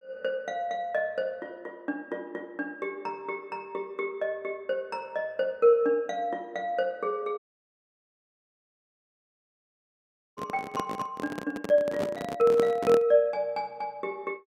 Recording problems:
audio cutting out; at 7.5 s for 3 s
handling noise; from 10 to 13 s; peak +3 dB vs average level

